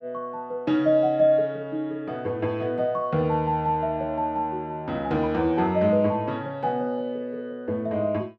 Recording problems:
none

